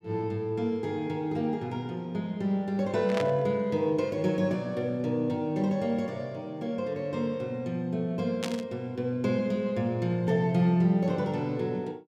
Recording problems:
static burst; at 3 s and at 8.5 s; peak -1 dB vs average level

